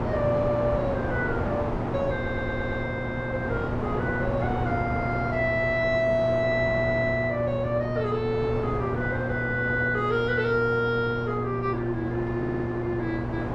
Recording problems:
electrical hum; 60 Hz, harmonics up to 1.1 kHz, SNR 5 dB
wind noise; below 780 Hz, SNR 5 dB
audio stuttering; at 2 s and at 12 s

